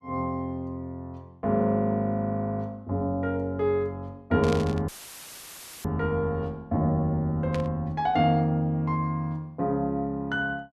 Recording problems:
static burst; at 4.5 s and at 7.5 s; peak -5 dB vs average level
audio cutting out; at 5 s for 1 s; filled with static

